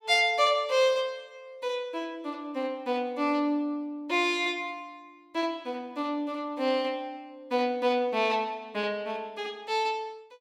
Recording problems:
none

